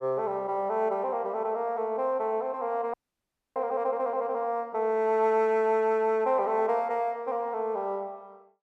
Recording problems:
frozen audio; at 3 s for 0.5 s

